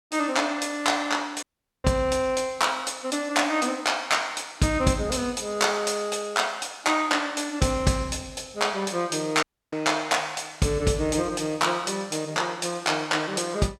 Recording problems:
dropout; at 1.5 s and at 9.5 s

